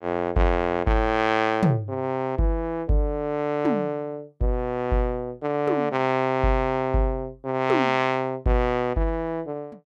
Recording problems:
none

